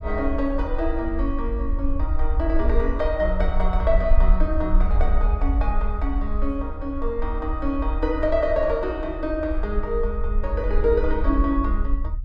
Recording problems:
rumble; below 52 Hz, SNR 1 dB

